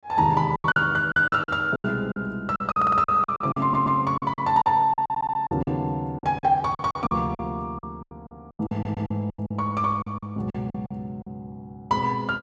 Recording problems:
packet loss; 16% of the sound replaced, filled with silence
audio stuttering; 4 times, first at 3 s

